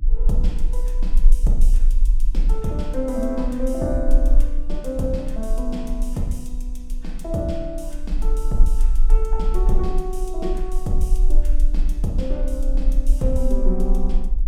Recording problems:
hum; 60 Hz, harmonics up to 300 Hz, SNR 20 dB
rumble; below 36 Hz, strongest tone 20 Hz, SNR -4 dB

